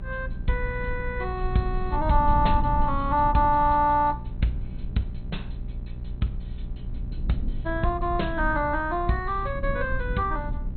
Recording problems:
lossy compression; MP2, log-spectral distance 2 dB, nothing above 4.2 kHz
mains hum; 60 Hz, harmonics up to 600 Hz, SNR 12 dB
low-frequency rumble; below 68 Hz, SNR 7 dB

